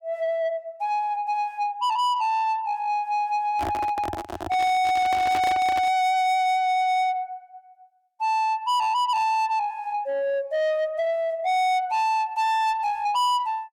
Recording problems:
distorted audio; soft clipping, signal-to-distortion ratio 8 dB
handling noise; from 3.5 to 6 s; peak +1 dB vs average level

